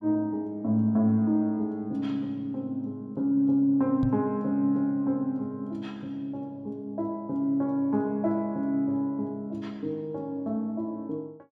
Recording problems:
microphone bump; at 4 s; peak +3 dB vs average level

